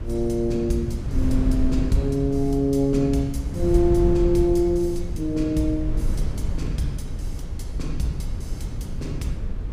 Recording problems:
wind on the microphone; below 92 Hz, SNR 5 dB

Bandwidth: 15.5 kHz